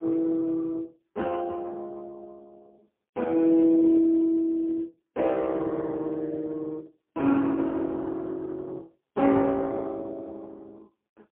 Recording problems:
telephone audio; 220 Hz to 2.3 kHz, AMR-NB, then MP3

